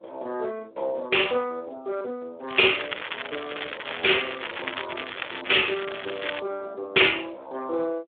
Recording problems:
telephone audio; 340 Hz to 3.5 kHz, Speex
crackle; from 2.5 to 6.5 s; loose cable, SNR 8 dB

